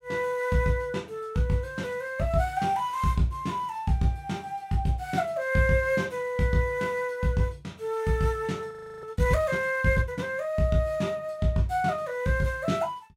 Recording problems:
frozen audio; at 8.5 s

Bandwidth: 16 kHz